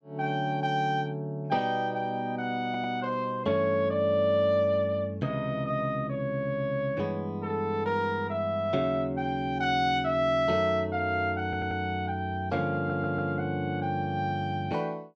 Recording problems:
audio stuttering; at 2.5 s, at 11 s and at 13 s

